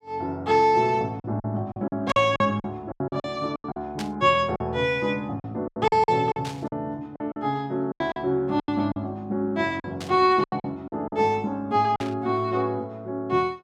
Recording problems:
packet loss; 11% of the sound replaced, filled with silence
burst of static; 5 times, first at 2 s; peak -6 dB vs average level

